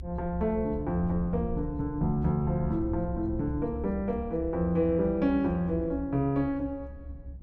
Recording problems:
rumble; below 74 Hz, strongest tone 68 Hz, SNR 10 dB

